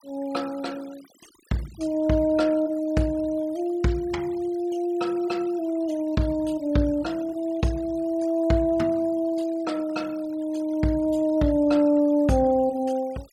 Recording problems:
denoising artefacts; signal-to-artefact ratio 25 dB

